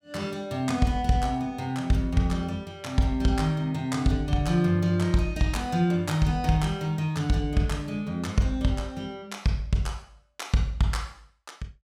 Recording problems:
none

